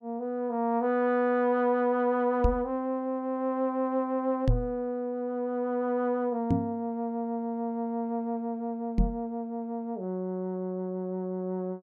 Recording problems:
knock on the microphone; 4 times, first at 2.5 s; peak +8 dB vs average level

